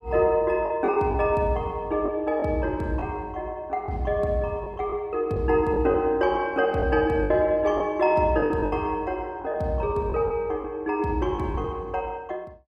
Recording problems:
lost packets; 6% of the sound replaced, filled with the last packet

